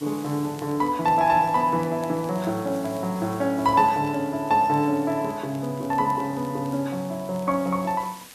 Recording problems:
background hiss; slope 0 dB per octave, SNR 22 dB
crackling; vinyl, SNR 30 dB

